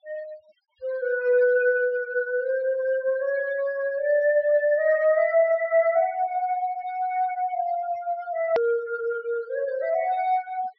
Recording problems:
low-pass filter; nothing above 5.6 kHz
denoising artefacts; signal-to-artefact ratio 19 dB
edit click; at 8.5 s

